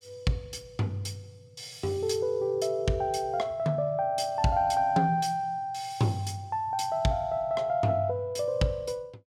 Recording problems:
none

